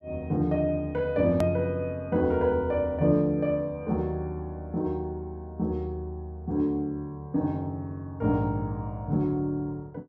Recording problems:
hard cut with a click; at 1.5 s

